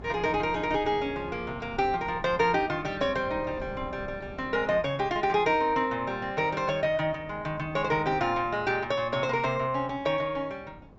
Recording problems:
treble missing; nothing above 8 kHz
wind noise; below 460 Hz, SNR 18 dB

